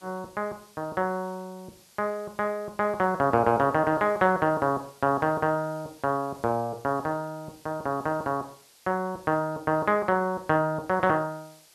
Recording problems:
background hiss; slope 0 dB per octave, SNR 27 dB

